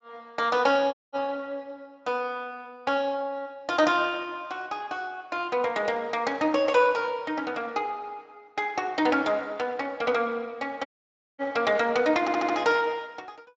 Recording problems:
lossy compression; Speex, log-spectral distance 3 dB
audio cutting out; at 1 s and at 11 s for 0.5 s
stutter; at 12 s

